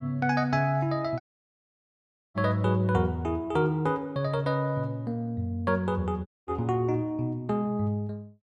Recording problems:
audio cutting out; at 1 s for 1 s and at 6.5 s

